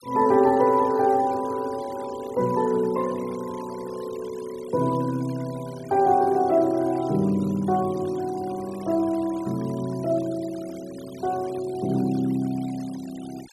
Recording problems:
noise reduction artefacts; signal-to-artefact ratio 22 dB

